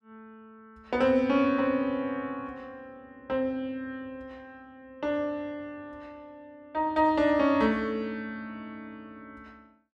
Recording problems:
none

